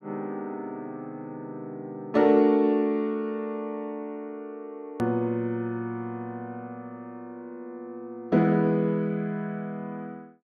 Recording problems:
click at an edit; at 5 s

